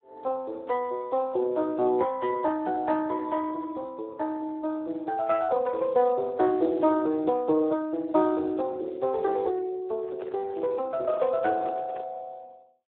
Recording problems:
telephone audio; 280 Hz to 2 kHz, Speex
handling noise; from 10 to 12 s; peak -6 dB vs average level

